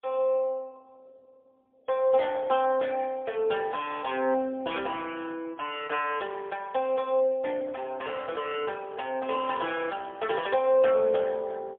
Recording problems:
phone line; 300 Hz to 3.4 kHz, AMR-NB, then MP3

